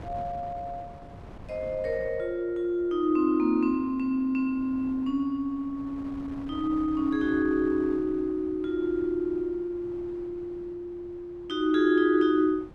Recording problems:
wind noise; below 500 Hz, SNR 20 dB

